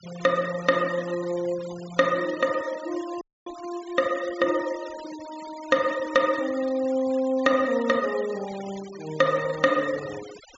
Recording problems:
treble missing; nothing above 8 kHz
denoising artefacts; signal-to-artefact ratio 17 dB
dropout; at 3 s

